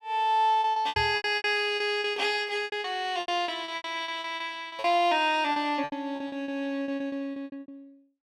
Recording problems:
packet loss; 20% of the sound replaced, filled with repeated pitch periods
microphone bump; at 1 s; peak -6 dB vs average level

